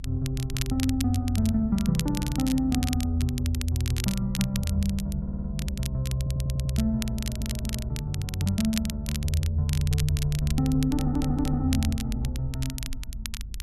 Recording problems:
low-frequency rumble; below 54 Hz, strongest tone 50 Hz, SNR 10 dB
crackle; vinyl, SNR 11 dB
stutter; 4 times, first at 5 s

